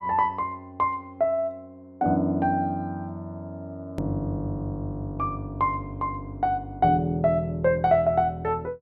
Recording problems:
hard cut with a click; at 4 s

